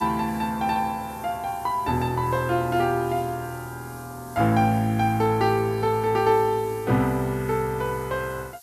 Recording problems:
background hiss; SNR 22 dB

